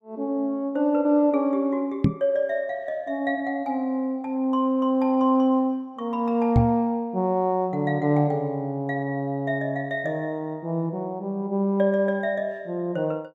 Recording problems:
knock on the microphone; at 2 s and at 6.5 s; peak +8 dB vs average level

